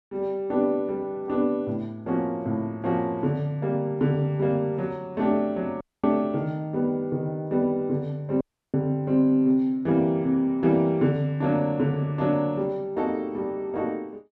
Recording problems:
dropout; at 6 s and at 8.5 s

